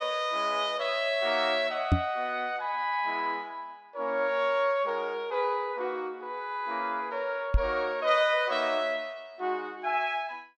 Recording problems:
microphone bump; at 2 s and at 7.5 s; peak +8 dB vs average level

